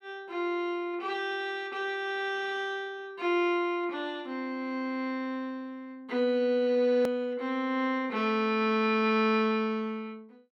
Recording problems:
hard cut with a click; at 7 s

